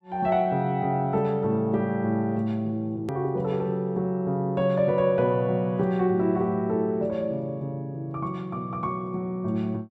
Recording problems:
hard cut with a click; at 3 s

